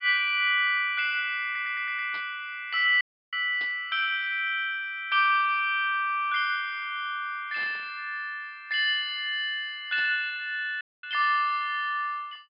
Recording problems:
treble missing; nothing above 5.5 kHz
audio stuttering; at 1.5 s
burst of static; 4 times, first at 2 s; peak -13 dB vs average level
dropout; at 3 s and at 11 s

